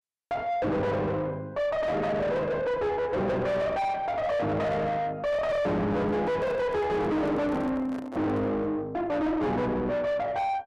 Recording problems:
distorted audio; soft clipping, signal-to-distortion ratio 6 dB
handling noise; from 6 to 8.5 s; peak -4 dB vs average level

